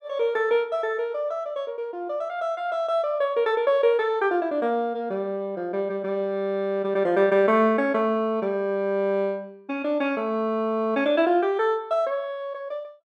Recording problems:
none

